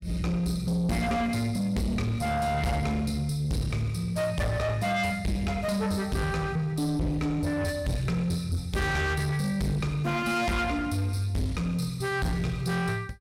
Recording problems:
distorted audio; soft clipping, signal-to-distortion ratio 8 dB

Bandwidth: 16.5 kHz